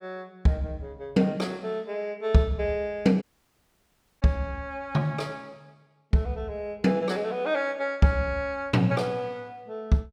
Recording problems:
audio cutting out; at 3 s for 1 s

